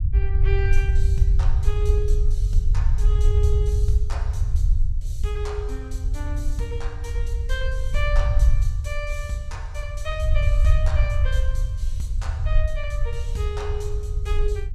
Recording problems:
low-frequency rumble; below 68 Hz, SNR -9 dB

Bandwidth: 14.5 kHz